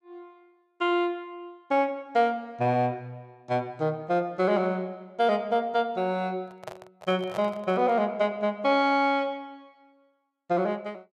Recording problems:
handling noise; from 6.5 to 8 s; peak -6 dB vs average level

